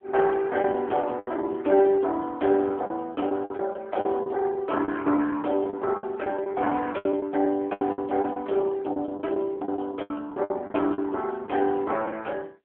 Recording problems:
phone line; 240 Hz to 3.3 kHz, AMR-NB
packet loss; 13% of the sound replaced, filled with the last packet

